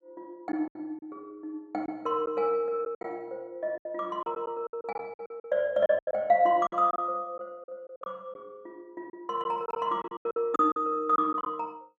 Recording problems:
packet loss; 12% of the sound replaced, filled with silence

